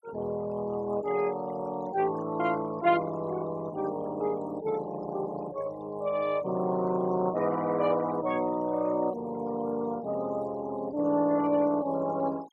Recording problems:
noise reduction artefacts; signal-to-artefact ratio 20 dB

